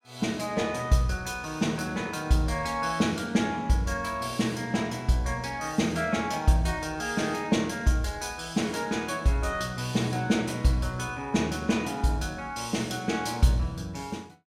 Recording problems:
none

